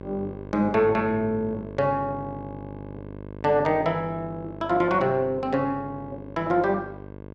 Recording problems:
electrical hum; 50 Hz, harmonics up to 1.6 kHz, SNR 14 dB

